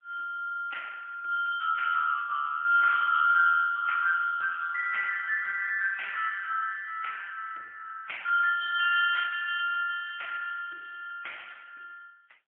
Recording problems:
phone line; 650 Hz to 3.4 kHz, AMR-NB, then MP3

